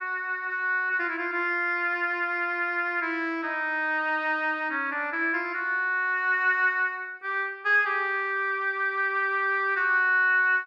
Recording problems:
none

